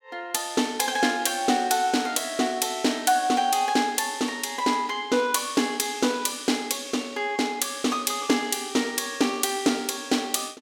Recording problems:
none

